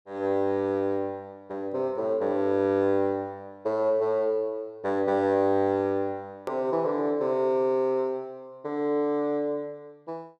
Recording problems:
hard cut with a click; at 6.5 s

